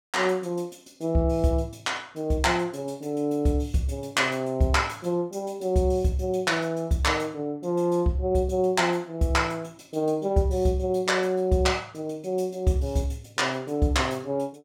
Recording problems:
none

